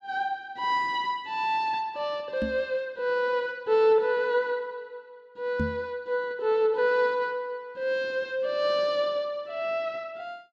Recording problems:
microphone thump; at 2.5 s and at 5.5 s; peak +2 dB vs average level

